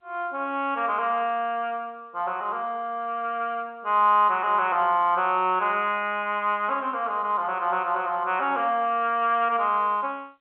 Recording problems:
telephone audio; 300 Hz to 3.5 kHz, G.711

